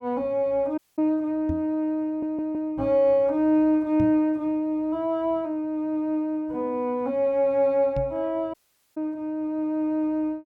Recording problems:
audio cutting out; at 1 s and at 8.5 s
microphone bump; at 1.5 s, at 4 s and at 8 s; peak -2 dB vs average level
audio stuttering; at 2 s

